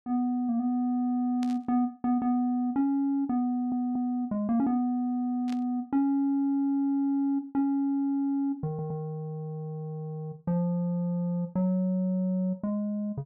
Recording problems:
static burst; at 1.5 s and at 5.5 s; peak -12 dB vs average level
audio stuttering; at 3.5 s and at 8.5 s

